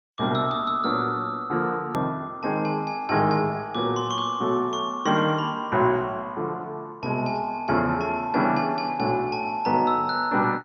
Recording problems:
lossy codec; MP2, log-spectral distance 2 dB, nothing above 17.1 kHz
click at an edit; at 2 s

